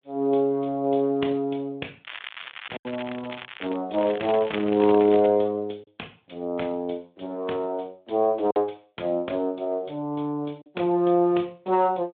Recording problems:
phone line; 260 Hz to 3.5 kHz, Speex
packet loss; 1.6% of the sound replaced, filled with silence
crackle; from 2 to 4 s and from 4 to 5.5 s; loose cable, SNR 13 dB

